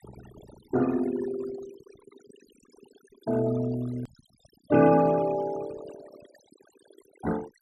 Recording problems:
noise reduction artefacts; signal-to-artefact ratio 17 dB
click at an edit; at 4 s

